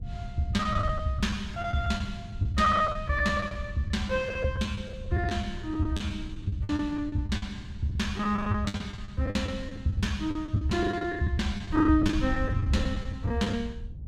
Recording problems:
wind on the microphone; below 110 Hz, SNR 9 dB
packet loss; 15% of the sound replaced, filled with the last packet

